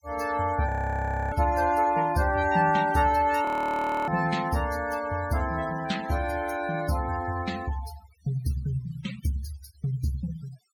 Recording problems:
noise reduction artefacts; signal-to-artefact ratio 16 dB
frozen audio; at 0.5 s for 0.5 s and at 3.5 s for 0.5 s

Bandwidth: 18 kHz